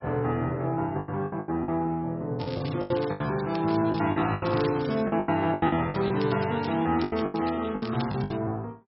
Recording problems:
lossy codec; MP3, log-spectral distance 5 dB
packet loss; 14% of the sound replaced, filled with the last packet
crackle; from 2.5 to 5 s and from 5.5 to 8.5 s; loose cable, SNR 16 dB

